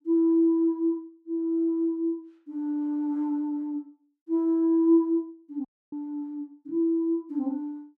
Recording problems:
dropout; at 5.5 s

